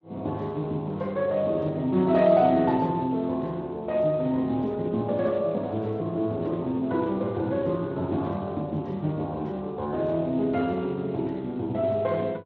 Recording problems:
lossy codec; Speex, log-spectral distance 2 dB

